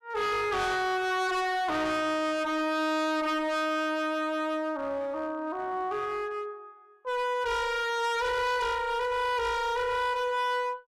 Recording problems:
distortion; hard clipping, uneven, signal-to-distortion ratio 5 dB

